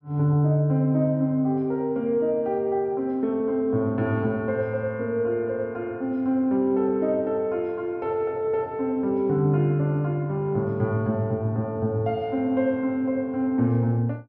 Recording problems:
none

